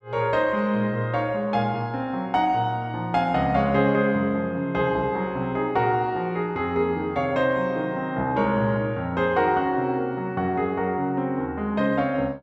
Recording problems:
none

